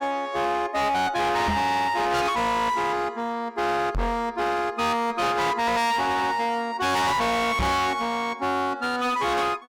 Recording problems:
distorted audio; hard clipping, signal-to-distortion ratio 6 dB
knock on the microphone; at 1.5 s, at 4 s and at 7.5 s; peak +2 dB vs average level

